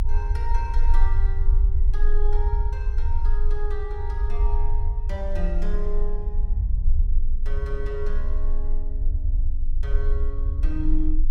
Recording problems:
low-frequency rumble; below 44 Hz, strongest tone 20 Hz, SNR -10 dB

